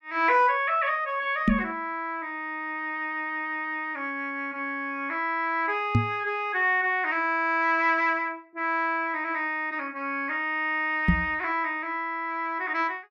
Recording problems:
microphone thump; at 1.5 s, at 6 s and at 11 s; peak +8 dB vs average level

